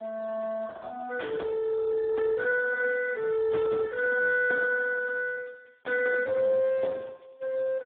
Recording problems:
phone line; 320 Hz to 2.5 kHz, Speex

